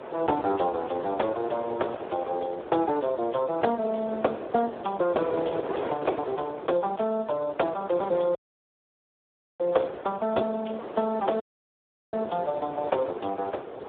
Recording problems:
telephone audio; 320 Hz to 4 kHz, Speex
wind noise; below 770 Hz, SNR 8 dB
audio cutting out; at 8.5 s for 1.5 s and at 11 s for 0.5 s

